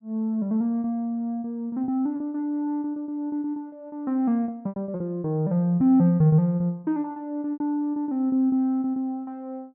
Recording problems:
lost packets; 15% of the sound replaced, filled with repeated pitch periods

